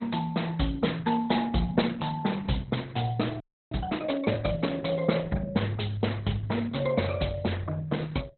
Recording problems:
lossy compression; MP2, then Opus, log-spectral distance 5 dB, nothing above 4.1 kHz
frozen audio; at 3.5 s

